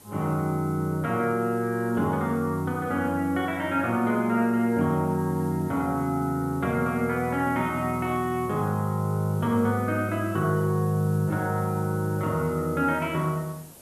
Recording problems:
hiss; SNR 22 dB

